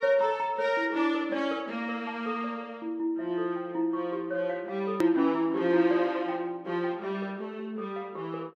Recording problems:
click at an edit; at 5 s

